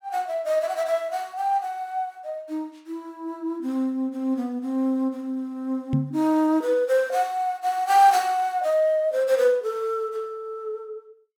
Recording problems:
microphone thump; at 6 s; peak +4 dB vs average level

